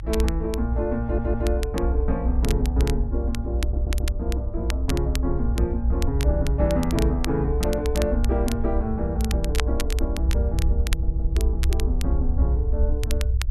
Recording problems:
rumble; below 64 Hz, strongest tone 60 Hz, SNR -3 dB
crackling; vinyl, SNR 10 dB
audio stuttering; at 1 s, at 3.5 s and at 11 s

